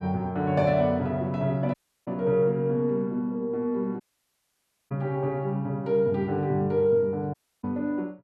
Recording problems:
audio cutting out; at 1.5 s, at 4 s for 1 s and at 7.5 s

